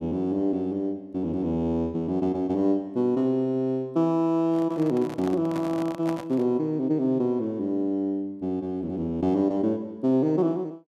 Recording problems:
microphone handling noise; from 4.5 to 6.5 s; peak -7 dB vs average level

